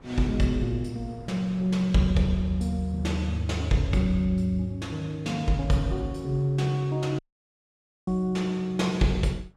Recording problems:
wind on the microphone; below 460 Hz, SNR 25 dB
dropout; at 7 s for 1 s

